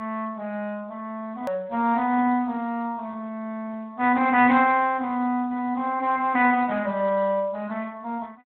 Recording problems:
telephone audio; 240 Hz to 3.7 kHz, Speex
hard cut with a click; at 1.5 s

